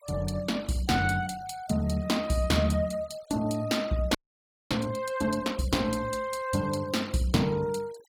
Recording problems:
denoising artefacts; signal-to-artefact ratio 22 dB
frozen audio; at 4 s for 0.5 s

